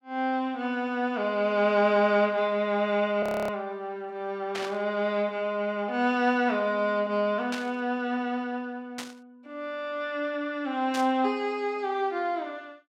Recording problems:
audio freezing; at 3 s
static burst; 4 times, first at 4.5 s; peak -4 dB vs average level

